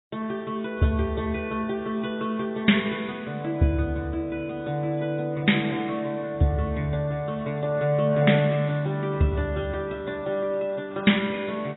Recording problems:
lossy codec; AAC, log-spectral distance 2 dB, nothing above 3.8 kHz

